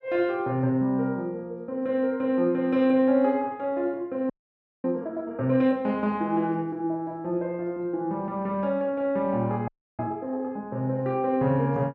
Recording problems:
audio freezing; at 4.5 s for 0.5 s and at 9.5 s

